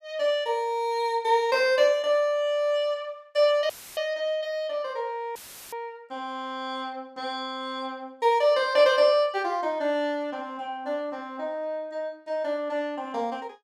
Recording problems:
audio cutting out; at 3.5 s and at 5.5 s; filled with static

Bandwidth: 14.5 kHz